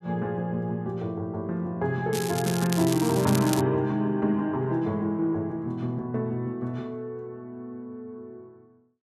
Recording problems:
crackle; from 2 to 3.5 s; loose cable, SNR 8 dB

